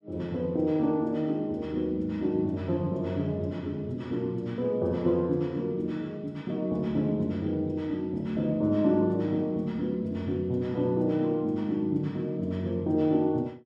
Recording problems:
none

